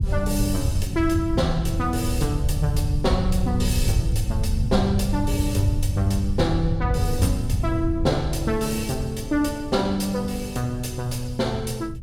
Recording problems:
low-frequency rumble; below 110 Hz, SNR 2 dB

